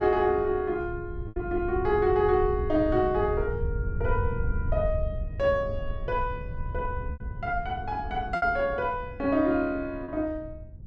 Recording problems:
wind noise; below 96 Hz, SNR 8 dB
lost packets; 3% of the sound replaced, filled with repeated pitch periods

